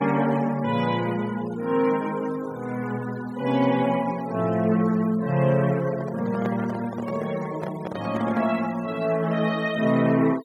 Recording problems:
denoising artefacts; signal-to-artefact ratio 20 dB
microphone handling noise; from 6 to 8.5 s; peak -4 dB vs average level

